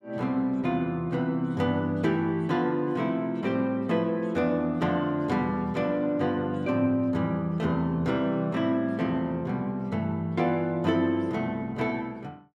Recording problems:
none

